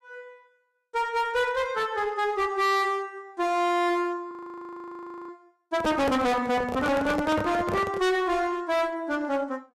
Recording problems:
distortion; hard clipping, uneven, signal-to-distortion ratio 5 dB
frozen audio; at 4.5 s for 1 s
handling noise; from 6 to 8 s; peak +1 dB vs average level

